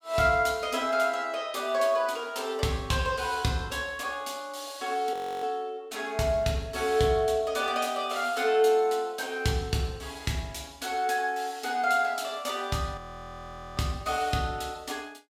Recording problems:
frozen audio; at 5 s and at 13 s for 1 s

